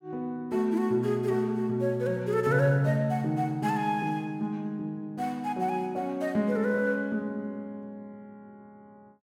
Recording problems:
none

